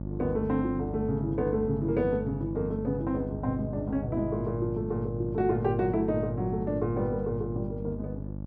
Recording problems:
electrical hum; 50 Hz, harmonics up to 650 Hz, SNR 7 dB

